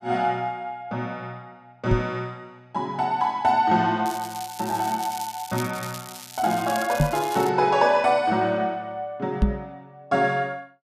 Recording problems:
microphone bump; at 2 s, at 7 s and at 9.5 s; peak +8 dB vs average level
crackle; from 4 to 7.5 s; loose cable, SNR 13 dB

